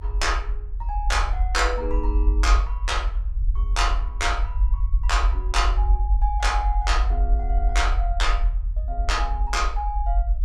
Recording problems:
rumble; below 50 Hz, strongest tone 40 Hz, SNR -2 dB

